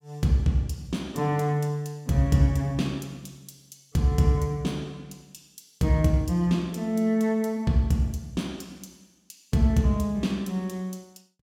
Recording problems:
none

